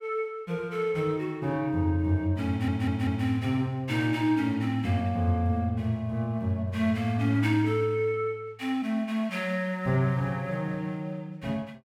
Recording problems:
stutter; at 2.5 s

